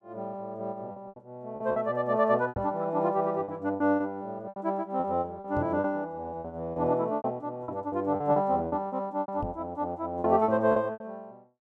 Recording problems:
lost packets; 12% of the sound replaced, filled with repeated pitch periods
microphone thump; at 2.5 s, at 5.5 s and at 9.5 s; peak -3 dB vs average level

